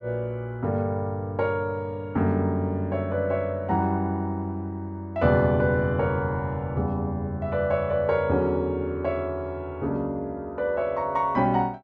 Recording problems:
none

